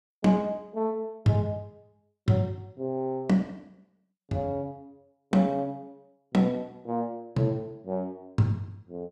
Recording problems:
none

